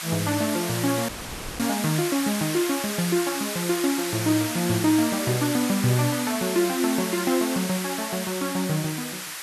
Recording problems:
background hiss; SNR 5 dB
dropout; at 1 s for 0.5 s

